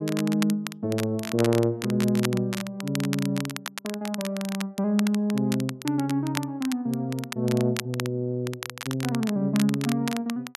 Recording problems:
crackling; vinyl, SNR 10 dB

